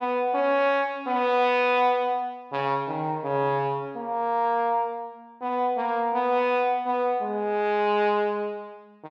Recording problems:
none

